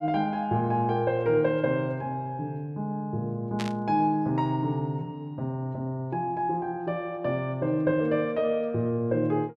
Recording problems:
burst of static; at 3.5 s; peak -3 dB vs average level

